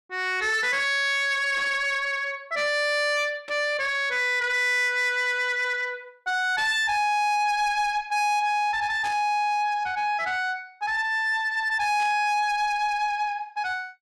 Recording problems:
distorted audio; soft clipping, signal-to-distortion ratio 12 dB
burst of static; 5 times, first at 1.5 s; peak -11 dB vs average level

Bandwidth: 12 kHz